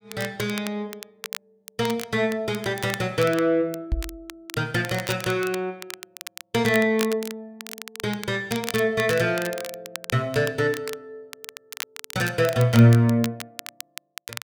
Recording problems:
crackling; vinyl, SNR 13 dB
microphone bump; at 4 s; peak +1 dB vs average level

